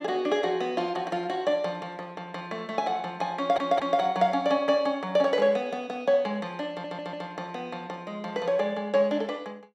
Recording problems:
stutter; at 3.5 s and at 6.5 s

